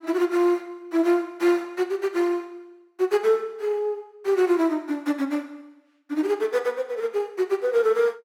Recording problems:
none

